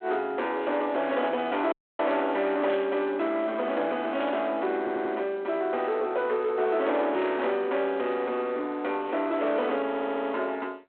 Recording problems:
telephone audio; 300 Hz to 3.7 kHz, G.726
distortion; soft clipping, signal-to-distortion ratio 11 dB
audio cutting out; at 1.5 s
burst of static; at 2.5 s and at 4 s; peak -9 dB vs average level
stutter; at 5 s and at 10 s

